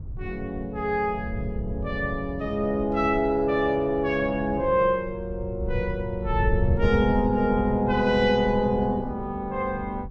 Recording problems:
wind on the microphone; below 110 Hz, SNR 9 dB

